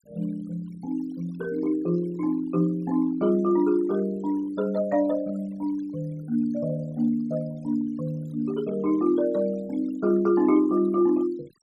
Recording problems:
noise reduction artefacts; signal-to-artefact ratio 24 dB

